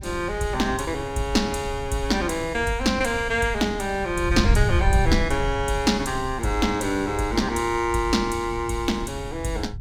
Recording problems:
wind on the microphone; below 94 Hz, SNR 7 dB

